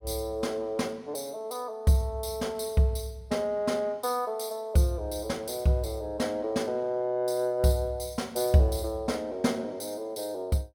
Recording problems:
none

